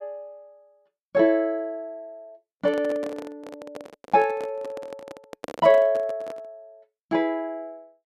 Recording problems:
handling noise; from 2.5 to 6.5 s; peak -7 dB vs average level

